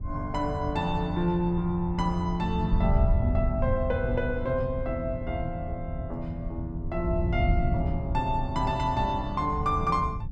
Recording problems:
wind noise; below 110 Hz, SNR 3 dB

